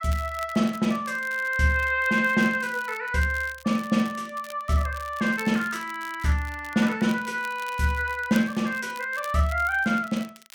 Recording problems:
crackle; vinyl, SNR 21 dB

